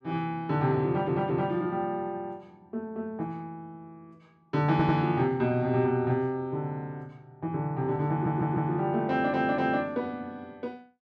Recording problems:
audio stuttering; 4 times, first at 1 s

